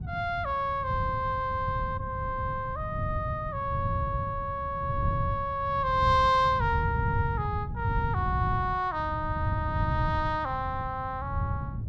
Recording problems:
wind on the microphone; below 130 Hz, SNR 4 dB

